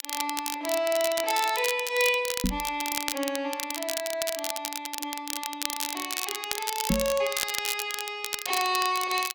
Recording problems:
crackle; vinyl, SNR 3 dB
microphone bump; at 2.5 s and at 7 s; peak +6 dB vs average level

